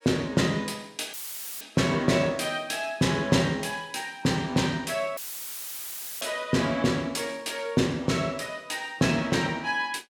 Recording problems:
audio cutting out; at 1 s and at 5 s for 1 s; filled with static

